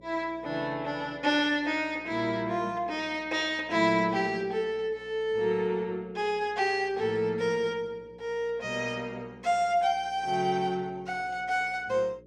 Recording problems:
electrical hum; 60 Hz, harmonics up to 540 Hz, SNR 26 dB

